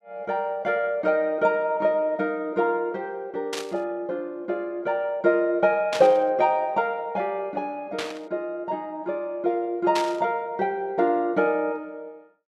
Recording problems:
burst of static; 4 times, first at 3.5 s; peak -1 dB vs average level

